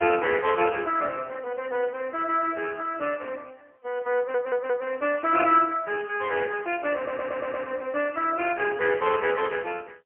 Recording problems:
phone line; 280 Hz to 3.1 kHz, AMR-NB, then MP3
audio stuttering; at 4 s and at 7 s

